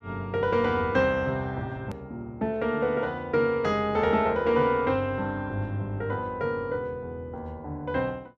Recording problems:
click at an edit; at 2 s

